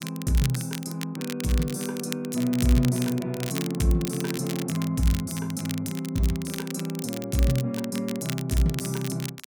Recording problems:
crackle; vinyl, SNR 11 dB

